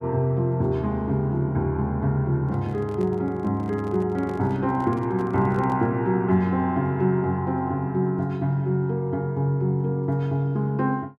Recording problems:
microphone handling noise; from 2.5 to 6 s; peak -11 dB vs average level

